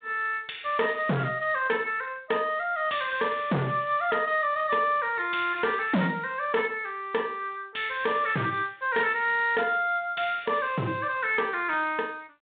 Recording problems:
telephone audio; 280 Hz to 3.7 kHz, G.726
distorted audio; hard clipping, uneven, signal-to-distortion ratio 9 dB

